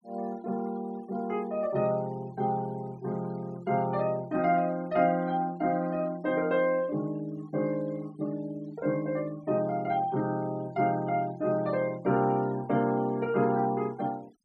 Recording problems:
noise reduction artefacts; signal-to-artefact ratio 25 dB

